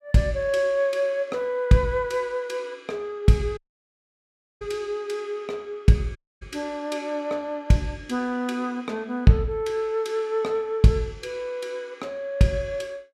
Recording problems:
audio cutting out; at 3.5 s for 1 s and at 6 s

